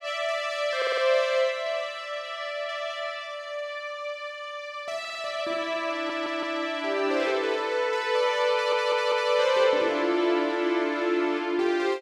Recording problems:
audio stuttering; 4 times, first at 1 s

